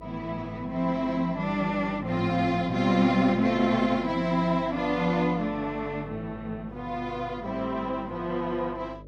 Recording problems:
hum; 50 Hz, harmonics up to 600 Hz, SNR 19 dB

